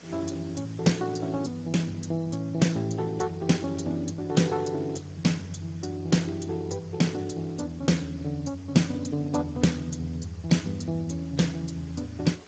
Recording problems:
codec artefacts; Speex, log-spectral distance 6 dB, nothing above 7.3 kHz
electrical hum; 60 Hz, harmonics up to 660 Hz, SNR 28 dB
hiss; slope -2 dB per octave, SNR 25 dB

